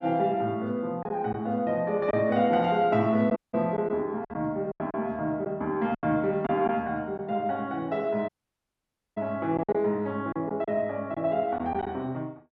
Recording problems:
packet loss; 5% of the sound replaced, filled with silence
dropout; at 3.5 s and at 8.5 s for 1 s

